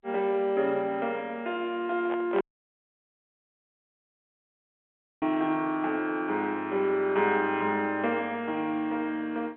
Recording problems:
telephone audio; 280 Hz to 3.6 kHz, G.711
microphone handling noise; at 2 s; peak -3 dB vs average level
dropout; at 2.5 s for 3 s

